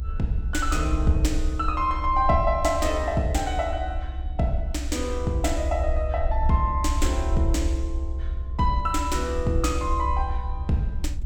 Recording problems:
rumble; below 66 Hz, SNR 3 dB

